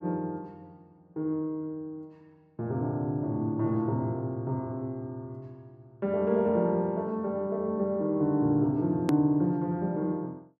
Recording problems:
edit click; at 9 s

